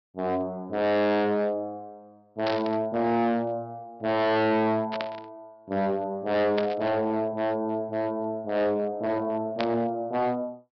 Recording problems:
low-pass filter; nothing above 5.5 kHz
distorted audio; hard clipping, signal-to-distortion ratio 6 dB
static burst; 4 times, first at 2.5 s; peak -2 dB vs average level

